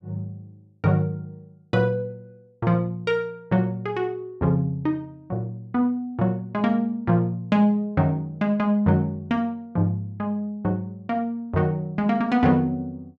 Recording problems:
none

